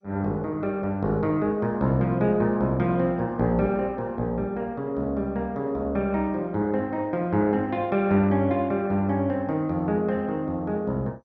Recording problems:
lossy codec; MP2, log-spectral distance 2 dB

